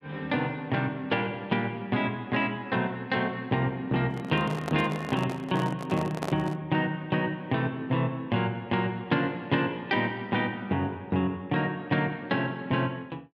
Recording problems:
handling noise; from 4 to 6.5 s; peak 0 dB vs average level

